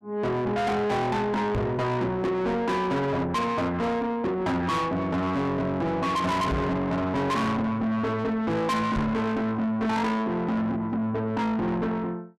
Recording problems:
distorted audio; soft clipping, signal-to-distortion ratio 6 dB
knock on the microphone; at 1.5 s, at 6.5 s and at 9 s; peak +4 dB vs average level

